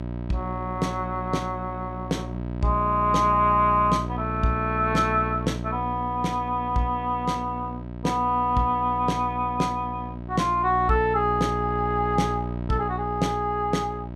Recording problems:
hum; 60 Hz, harmonics up to 1 kHz, SNR 8 dB

